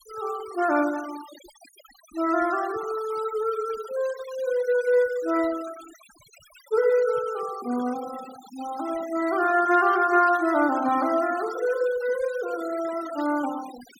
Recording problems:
noise reduction artefacts; signal-to-artefact ratio 18 dB

